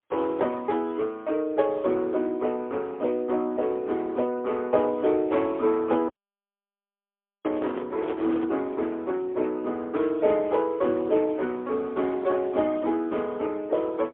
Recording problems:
telephone audio; 240 Hz to 3.4 kHz, AMR-NB, then MP3
audio cutting out; at 6 s for 1.5 s
microphone handling noise; from 7.5 to 8.5 s; peak -4 dB vs average level

